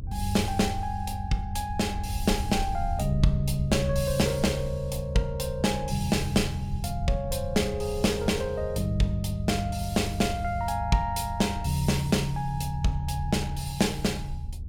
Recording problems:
low-frequency rumble; below 80 Hz, SNR 9 dB

